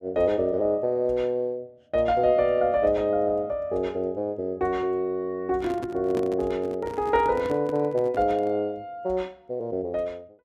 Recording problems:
handling noise; from 5.5 to 8.5 s; peak -4 dB vs average level

